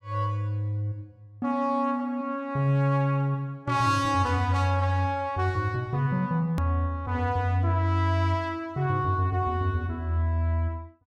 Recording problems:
hard cut with a click; at 6.5 s

